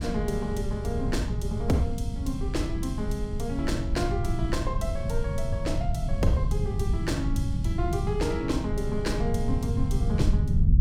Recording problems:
low-frequency rumble; below 130 Hz, SNR -2 dB

